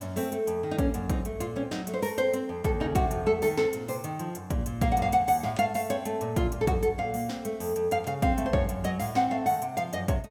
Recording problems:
none

